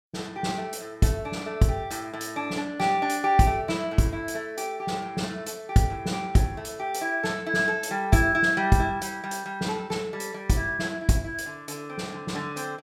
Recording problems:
none

